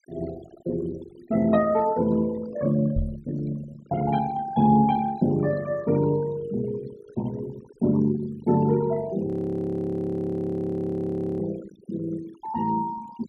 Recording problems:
noise reduction artefacts; signal-to-artefact ratio 18 dB
knock on the microphone; at 3 s; peak +1 dB vs average level
frozen audio; at 9.5 s for 2 s

